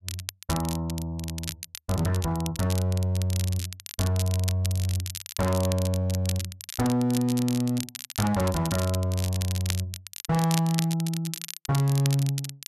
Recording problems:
distortion; hard clipping, uneven, signal-to-distortion ratio 11 dB
crackling; vinyl, SNR 9 dB

